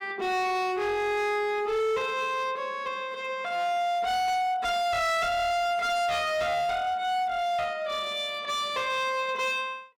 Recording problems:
distortion; hard clipping, signal-to-distortion ratio 8 dB

